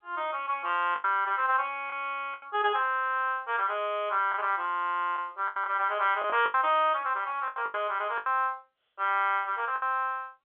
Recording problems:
telephone audio; 320 Hz to 3.5 kHz, G.711
packet loss; 7% of the sound replaced, filled with the last packet

